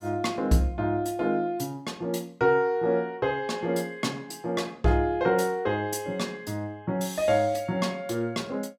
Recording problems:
none

